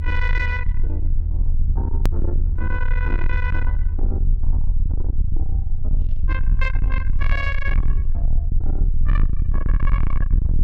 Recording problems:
distorted audio; soft clipping, signal-to-distortion ratio 6 dB
hum; 60 Hz, harmonics up to 1.3 kHz, SNR 20 dB
rumble; below 60 Hz, strongest tone 20 Hz, SNR -7 dB
hard cut with a click; at 2 s

